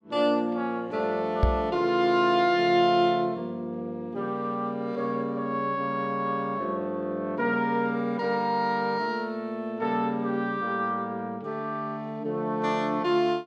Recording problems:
microphone bump; at 1.5 s; peak +7 dB vs average level

